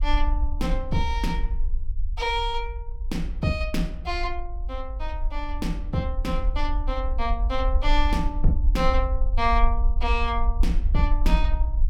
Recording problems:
low-frequency rumble; below 50 Hz, SNR 0 dB

